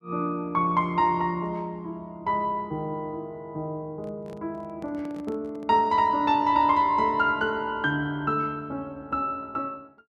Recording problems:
handling noise; from 4 to 6 s; peak -12 dB vs average level

